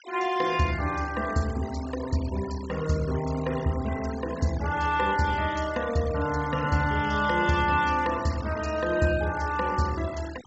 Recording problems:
low-pass filter; nothing above 8 kHz
denoising artefacts; signal-to-artefact ratio 16 dB

